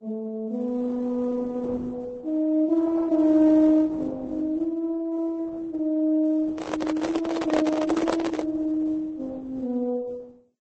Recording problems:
lossy compression; Opus, then Vorbis, log-spectral distance 2 dB, nothing above 8 kHz
microphone handling noise; from 6.5 to 8.5 s; peak +2 dB vs average level

